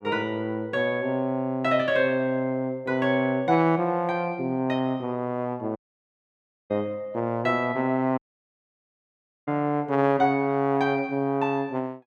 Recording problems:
dropout; at 6 s for 1 s and at 8 s for 1.5 s

